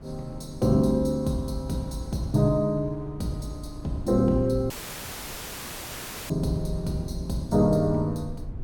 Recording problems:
low-frequency rumble; below 150 Hz, SNR 16 dB
wind on the microphone; below 250 Hz, SNR 21 dB
audio cutting out; at 4.5 s for 1.5 s; filled with static

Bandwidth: 17.5 kHz